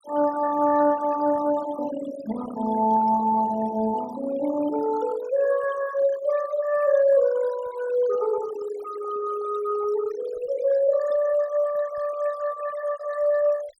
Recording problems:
denoising artefacts; signal-to-artefact ratio 17 dB

